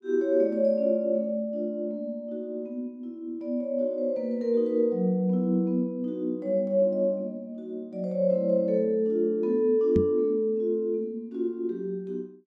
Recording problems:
knock on the microphone; at 10 s; peak +5 dB vs average level

